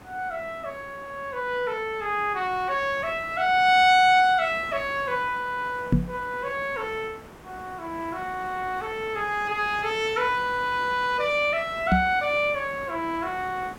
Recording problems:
background hiss; SNR 19 dB
microphone thump; at 6 s and at 12 s; peak +7 dB vs average level

